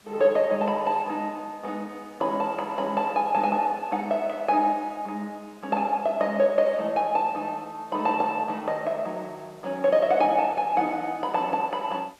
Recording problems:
background hiss; slope -2 dB per octave, SNR 29 dB

